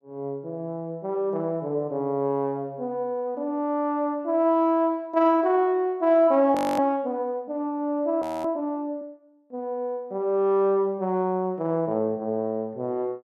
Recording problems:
frozen audio; at 6.5 s and at 8 s

